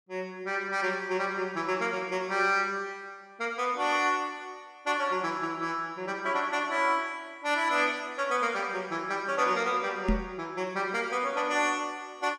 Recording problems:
knock on the microphone; at 10 s; peak +5 dB vs average level

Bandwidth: 14.5 kHz